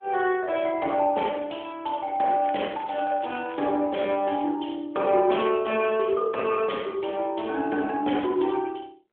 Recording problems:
telephone audio; 240 Hz to 3.5 kHz, AMR-NB
crackle; from 2.5 to 3.5 s; loose cable, SNR 21 dB

